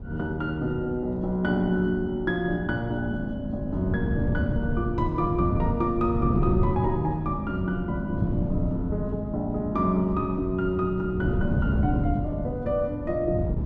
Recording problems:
wind noise; below 200 Hz, SNR 3 dB

